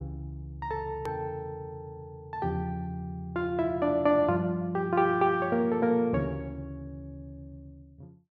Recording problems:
click at an edit; at 1 s

